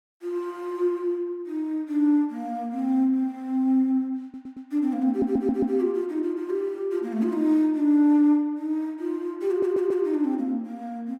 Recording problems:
stutter; at 4 s, at 5 s and at 9.5 s

